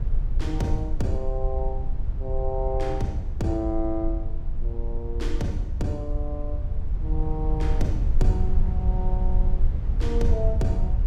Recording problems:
low-frequency rumble; below 58 Hz, SNR -3 dB

